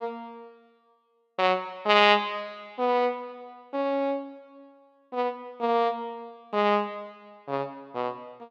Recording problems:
none

